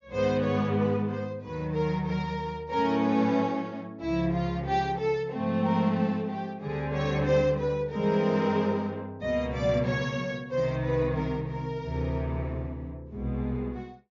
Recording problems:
treble cut off; nothing above 7 kHz

